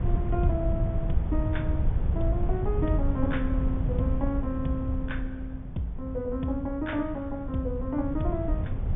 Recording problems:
treble cut off; nothing above 3.5 kHz
wind noise; below 100 Hz, SNR -1 dB

